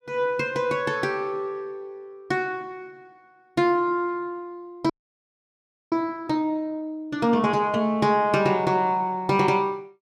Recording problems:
audio freezing; at 5 s for 1 s

